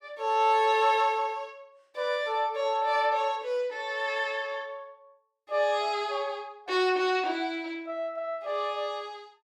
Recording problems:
none

